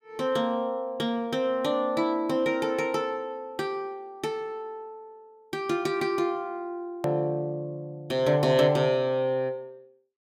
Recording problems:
edit click; at 7 s

